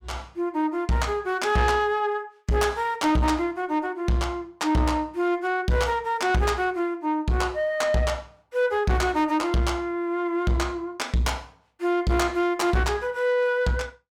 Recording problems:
distortion; soft clipping, signal-to-distortion ratio 11 dB

